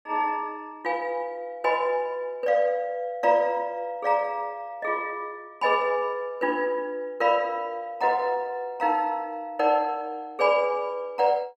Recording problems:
none

